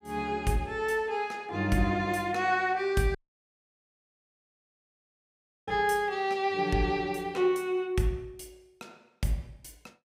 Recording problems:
audio cutting out; at 3 s for 2.5 s

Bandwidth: 15.5 kHz